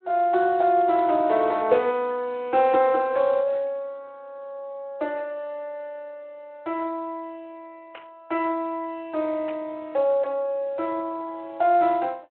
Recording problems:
telephone audio; 340 Hz to 3.3 kHz, Speex
static burst; at 1 s, at 8 s and at 9.5 s; peak -14 dB vs average level

